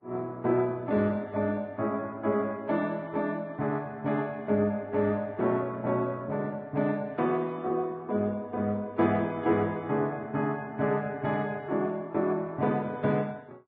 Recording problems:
treble cut off; nothing above 5.3 kHz
lossy codec; Vorbis, log-spectral distance 2 dB

